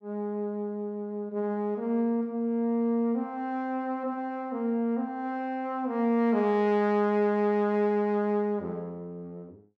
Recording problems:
none

